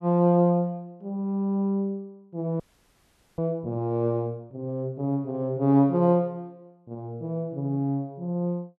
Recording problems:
frozen audio; at 2.5 s for 1 s

